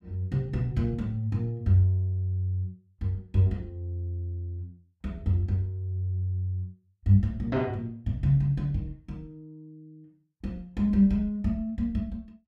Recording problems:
none

